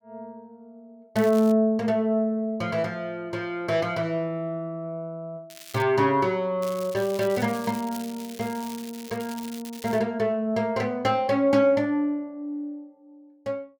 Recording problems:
crackling; at 1 s, at 5.5 s and from 6.5 to 10 s; loose cable, SNR 17 dB

